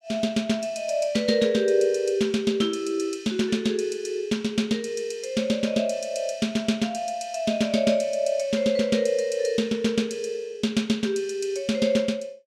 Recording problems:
none

